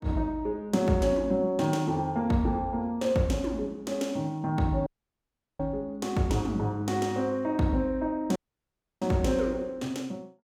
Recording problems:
dropout; at 5 s for 0.5 s and at 8.5 s for 0.5 s

